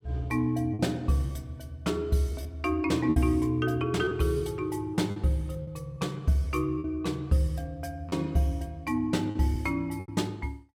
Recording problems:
lost packets; 5% of the sound replaced, filled with repeated pitch periods

